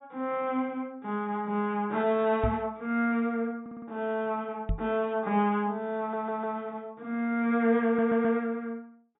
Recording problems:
low-pass filter; nothing above 4 kHz
microphone thump; at 2.5 s and at 4.5 s; peak +3 dB vs average level
stutter; at 3.5 s, at 6 s and at 8 s

